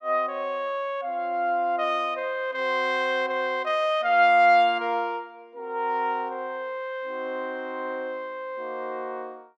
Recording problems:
none

